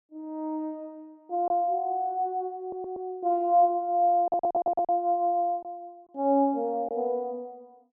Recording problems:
packet loss; 1.6% of the sound replaced, filled with silence
audio stuttering; at 2.5 s and at 4 s

